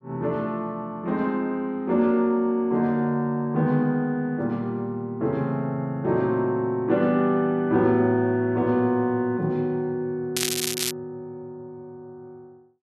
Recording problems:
crackle; at 10 s; loose cable, SNR 2 dB

